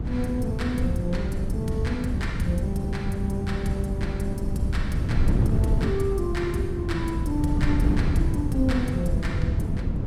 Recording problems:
hum; 60 Hz, harmonics up to 540 Hz, SNR 24 dB
wind noise; below 160 Hz, SNR -2 dB

